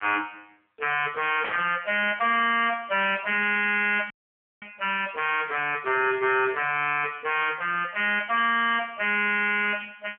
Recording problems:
phone line; 260 Hz to 3.1 kHz, AMR-NB
distortion; hard clipping, signal-to-distortion ratio 9 dB
static burst; at 1.5 s; peak 0 dB vs average level
audio cutting out; at 4 s for 0.5 s

